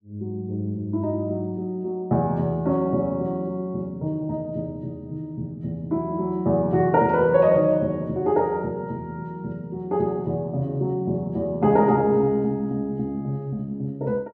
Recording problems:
none

